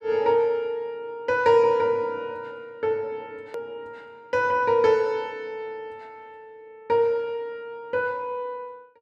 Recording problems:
hard cut with a click; at 3.5 s

